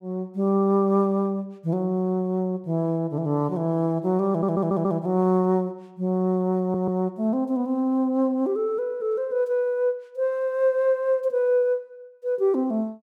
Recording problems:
audio stuttering; at 4.5 s and at 6.5 s

